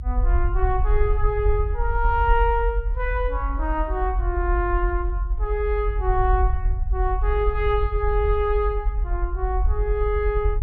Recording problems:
low-frequency rumble; below 56 Hz, SNR 0 dB

